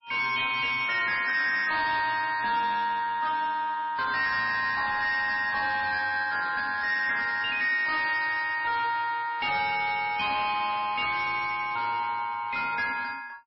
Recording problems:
lossy codec; MP3, log-spectral distance 4 dB, nothing above 5.5 kHz
distortion; soft clipping, signal-to-distortion ratio 10 dB

